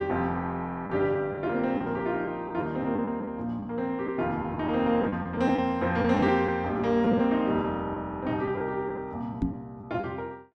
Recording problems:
packet loss; 6% of the sound replaced, filled with the last packet
microphone bump; at 9.5 s; peak +4 dB vs average level

